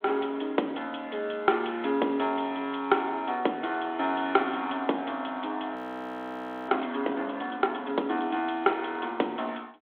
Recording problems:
telephone audio; 220 Hz to 3.6 kHz, G.726
audio freezing; at 6 s for 1 s

